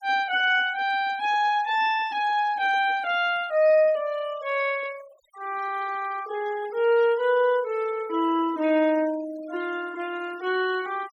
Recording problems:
noise reduction artefacts; signal-to-artefact ratio 22 dB

